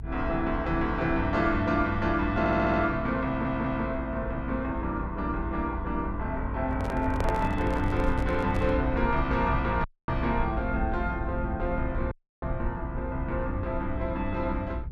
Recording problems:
rumble; below 76 Hz, SNR 7 dB
audio stuttering; at 2.5 s and at 3.5 s
microphone handling noise; from 6.5 to 9 s; peak -1 dB vs average level
audio cutting out; at 10 s and at 12 s

